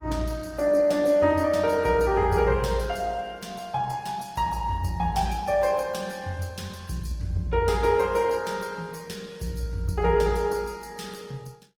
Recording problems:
lossy compression; Opus, log-spectral distance 4 dB, nothing above 19 kHz

